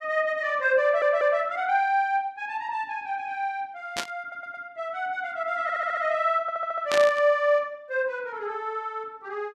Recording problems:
stutter; 4 times, first at 1 s
burst of static; at 4 s and at 7 s; peak +1 dB vs average level

